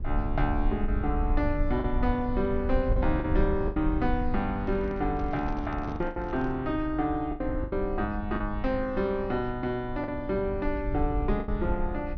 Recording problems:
treble missing; nothing above 6.2 kHz
low-frequency rumble; below 68 Hz, SNR 5 dB
packet loss; 6% of the sound replaced, filled with the last packet
microphone handling noise; from 4.5 to 6.5 s; peak -6 dB vs average level

